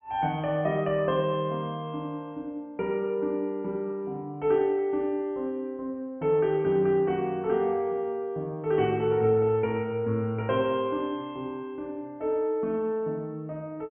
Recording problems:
low-pass filter; nothing above 3.2 kHz

